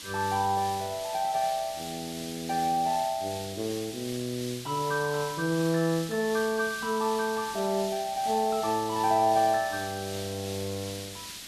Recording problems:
background hiss; SNR 10 dB

